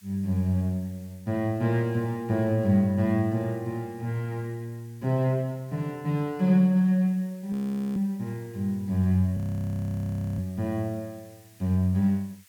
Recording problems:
background hiss; SNR 29 dB
audio freezing; at 7.5 s and at 9.5 s for 1 s

